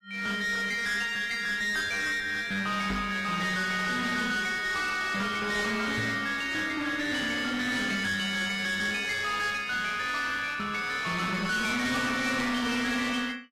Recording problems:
lossy codec; AAC, log-spectral distance 4 dB, nothing above 14.3 kHz
distorted audio; hard clipping, uneven, signal-to-distortion ratio 6 dB
knock on the microphone; at 3 s and at 6 s; peak -2 dB vs average level

